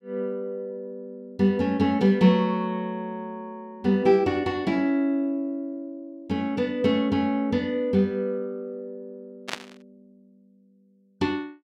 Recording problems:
static burst; at 9.5 s; peak -1 dB vs average level

